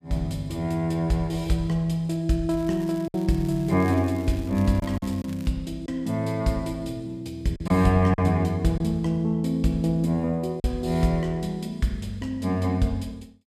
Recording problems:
lost packets; 2% of the sound replaced, filled with silence
crackling; from 2.5 to 5.5 s; loose cable, SNR 24 dB

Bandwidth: 15 kHz